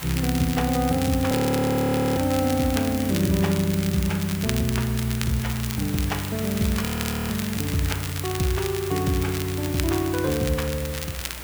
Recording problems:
hum; 60 Hz, harmonics up to 540 Hz, SNR 20 dB
hiss; slope -2 dB per octave, SNR 11 dB
crackling; vinyl, SNR 10 dB
audio freezing; at 1.5 s for 1 s and at 7 s

